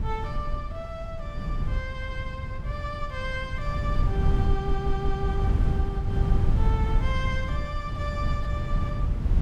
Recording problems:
wind noise; below 100 Hz, SNR -7 dB
stutter; at 4.5 s

